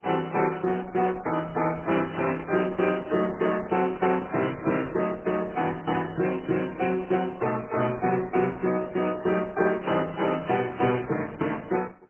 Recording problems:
codec artefacts; MP3, then Opus, log-spectral distance 4 dB, nothing above 2.9 kHz

